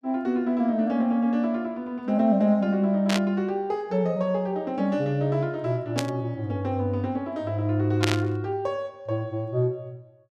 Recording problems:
burst of static; at 3 s, at 6 s and at 8 s; peak +3 dB vs average level

